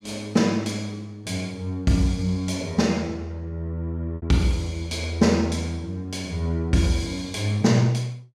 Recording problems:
packet loss; 0.9% of the sound replaced, filled with repeated pitch periods

